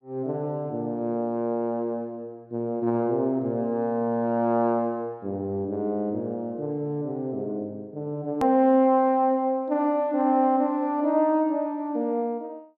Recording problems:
click at an edit; at 8.5 s

